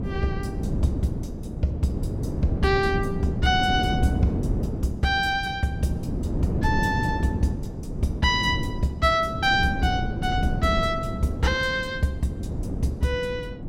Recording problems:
wind noise; below 250 Hz, SNR 4 dB

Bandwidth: 17 kHz